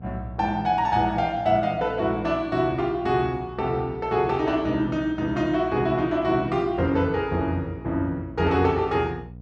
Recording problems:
hum; 60 Hz, harmonics up to 540 Hz, SNR 18 dB

